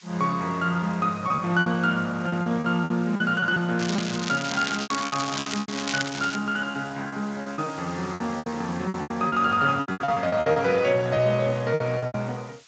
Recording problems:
lossy codec; Speex, log-spectral distance 9 dB, nothing above 7.3 kHz
background hiss; SNR 23 dB
packet loss; 14% of the sound replaced, filled with repeated pitch periods
crackle; from 4 to 6.5 s; loose cable, SNR 7 dB

